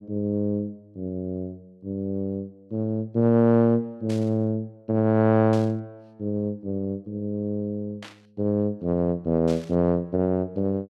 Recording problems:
static burst; 4 times, first at 4 s; peak -12 dB vs average level

